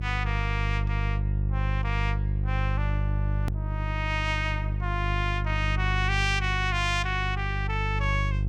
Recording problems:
hum; 50 Hz, harmonics up to 350 Hz, SNR -1 dB
hard cut with a click; at 3.5 s

